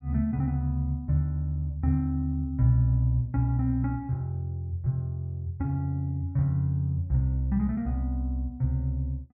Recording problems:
none

